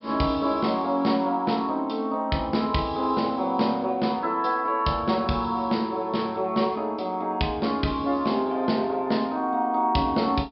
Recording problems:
treble cut off; nothing above 5.3 kHz

